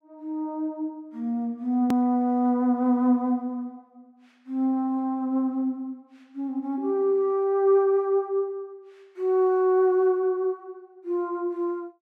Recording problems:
hard cut with a click; at 2 s

